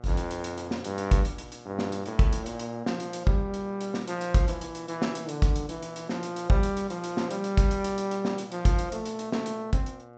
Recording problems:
treble missing; nothing above 8 kHz
electrical hum; 60 Hz, harmonics up to 1.6 kHz, SNR 20 dB

